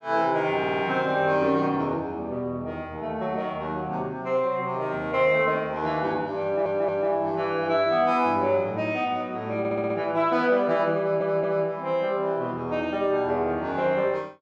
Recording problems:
audio stuttering; 4 times, first at 0.5 s

